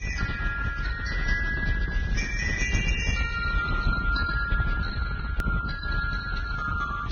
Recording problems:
lossy compression; Speex, then Vorbis, log-spectral distance 2 dB, nothing above 6.5 kHz
rumble; below 110 Hz, SNR 1 dB
hard cut with a click; at 5.5 s

